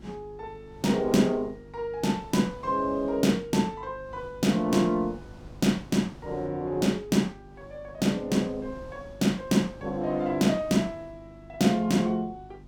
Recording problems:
electrical hum; 50 Hz, harmonics up to 350 Hz, SNR 23 dB
wind on the microphone; below 490 Hz, SNR 24 dB

